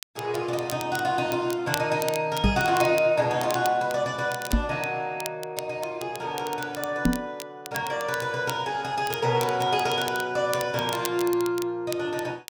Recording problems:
crackle; vinyl, SNR 12 dB
microphone thump; at 2.5 s, at 4.5 s and at 7 s; peak +8 dB vs average level

